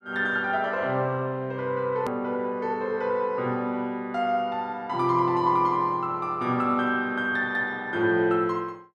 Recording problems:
click at an edit; at 2 s

